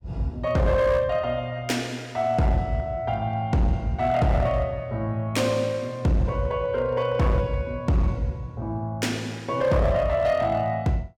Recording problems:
distortion; hard clipping, signal-to-distortion ratio 11 dB

